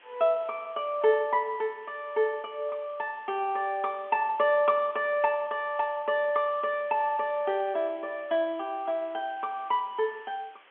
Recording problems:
telephone audio; 280 Hz to 3.3 kHz, G.711
hiss; SNR 28 dB

